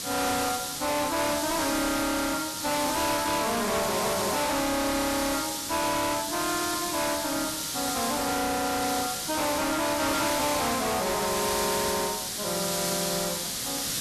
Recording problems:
codec artefacts; AAC, log-spectral distance 3 dB, nothing above 10.4 kHz
distorted audio; hard clipping, uneven, signal-to-distortion ratio 5 dB
background hiss; SNR 2 dB

